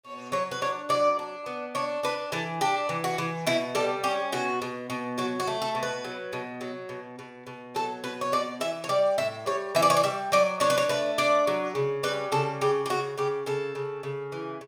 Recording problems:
none

